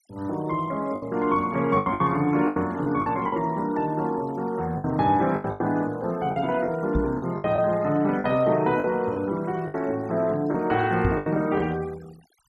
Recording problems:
noise reduction artefacts; signal-to-artefact ratio 24 dB
packet loss; 9% of the sound replaced, filled with the last packet
knock on the microphone; at 7 s and at 11 s; peak +3 dB vs average level

